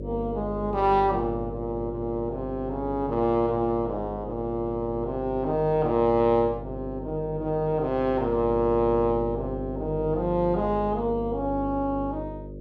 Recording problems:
mains hum; 50 Hz, harmonics up to 600 Hz, SNR 10 dB

